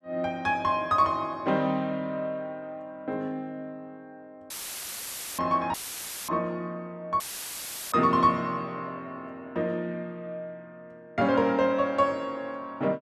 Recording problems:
audio cutting out; at 4.5 s for 1 s, at 5.5 s for 0.5 s and at 7 s for 0.5 s; filled with static

